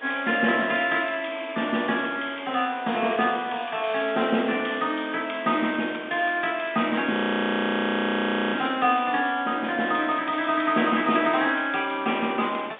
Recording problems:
phone line; 220 Hz to 3.6 kHz, G.711
background hiss; SNR 21 dB
audio freezing; at 7 s for 1.5 s

